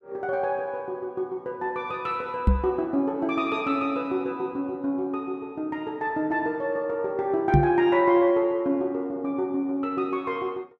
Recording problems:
microphone bump; at 2.5 s and at 7.5 s; peak +9 dB vs average level

